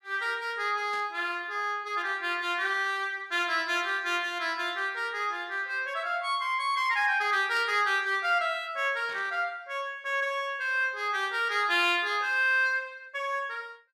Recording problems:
burst of static; at 1 s, at 7.5 s and at 9 s; peak -13 dB vs average level

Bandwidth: 15 kHz